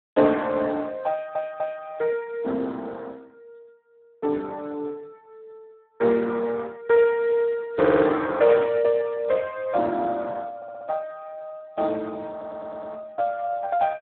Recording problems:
telephone audio; 190 Hz to 3.1 kHz, Speex
stutter; 4 times, first at 1 s

